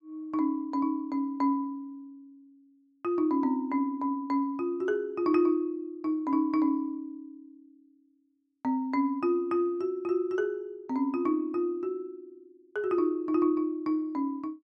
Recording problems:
none

